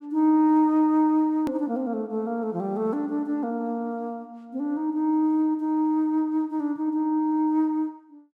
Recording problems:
edit click; at 1.5 s

